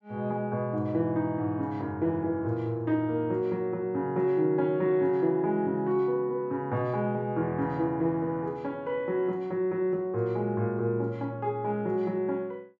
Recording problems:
none

